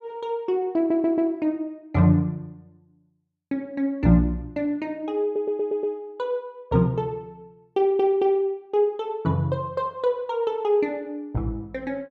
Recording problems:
stutter; at 1 s, at 5 s and at 8 s

